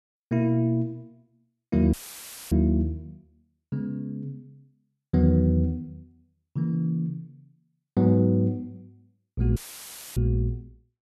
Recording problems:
audio cutting out; at 2 s for 0.5 s and at 9.5 s for 0.5 s; filled with static

